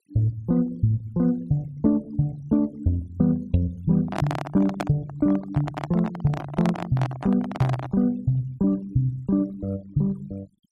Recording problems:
denoising artefacts; signal-to-artefact ratio 24 dB
microphone handling noise; from 4 to 8 s; peak +1 dB vs average level

